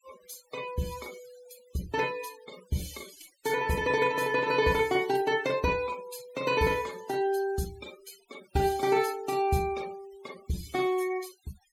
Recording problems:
denoising artefacts; signal-to-artefact ratio 19 dB

